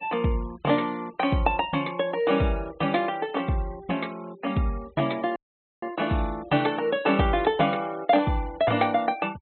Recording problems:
low-pass filter; nothing above 4.1 kHz
denoising artefacts; signal-to-artefact ratio 24 dB
audio cutting out; at 5.5 s

